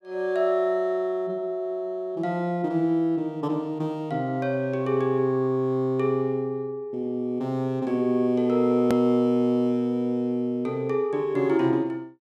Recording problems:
click at an edit; at 9 s

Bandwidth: 13.5 kHz